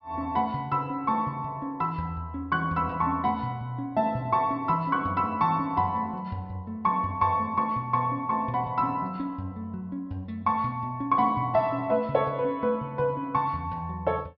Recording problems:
treble missing; nothing above 5.4 kHz

